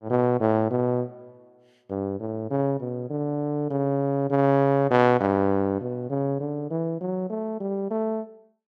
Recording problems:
none

